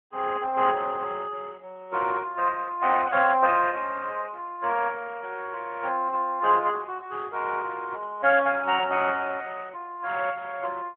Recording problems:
phone line; 220 Hz to 3.3 kHz, AMR-NB

